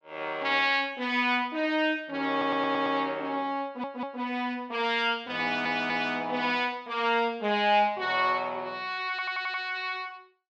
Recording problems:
stutter; 4 times, first at 2.5 s

